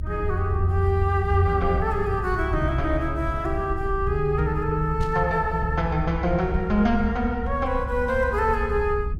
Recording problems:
low-frequency rumble; below 68 Hz, SNR 7 dB
static burst; at 5 s; peak -14 dB vs average level

